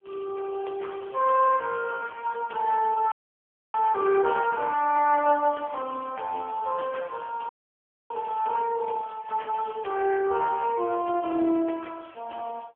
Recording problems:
phone line; 220 Hz to 2.5 kHz, AMR-NB
audio freezing; at 3 s for 0.5 s and at 7.5 s for 0.5 s

